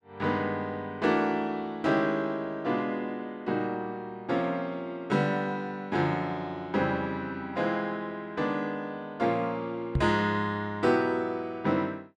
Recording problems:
knock on the microphone; at 10 s; peak +6 dB vs average level

